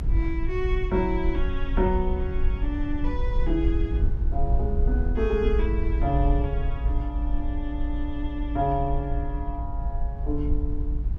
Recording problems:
low-frequency rumble; below 56 Hz, SNR -1 dB

